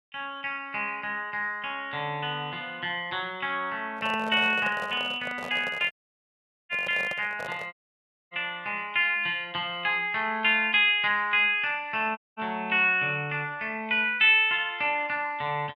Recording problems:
handling noise; from 4 to 7.5 s; peak -9 dB vs average level
audio cutting out; at 6 s for 1 s, at 7.5 s for 0.5 s and at 12 s

